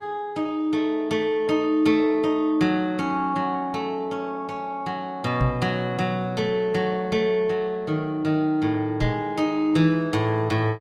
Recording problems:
codec artefacts; Opus, log-spectral distance 2 dB, nothing above 20.1 kHz
knock on the microphone; at 5.5 s and at 9 s; peak +4 dB vs average level

